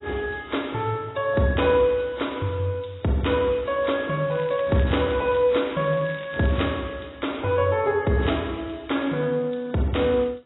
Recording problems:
lossy codec; AAC, log-spectral distance 5 dB, nothing above 3.9 kHz
crackling; from 4.5 to 6.5 s; loose cable, SNR 21 dB

